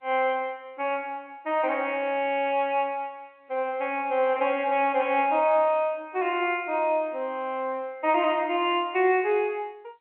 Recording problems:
phone line; 280 Hz to 3.3 kHz, G.711

